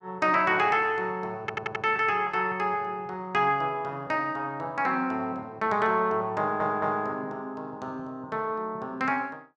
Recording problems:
stutter; at 1.5 s and at 6.5 s

